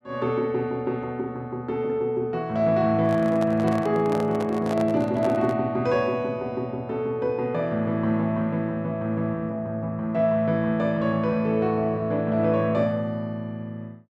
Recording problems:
microphone handling noise; from 3 to 5.5 s; peak -4 dB vs average level

